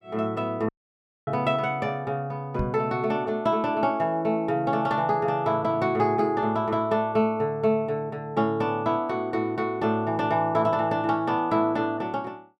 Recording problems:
dropout; at 0.5 s for 0.5 s
microphone bump; at 2.5 s; peak +1 dB vs average level

